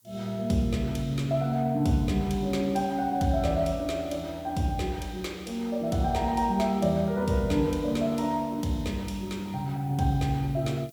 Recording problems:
hiss; SNR 29 dB

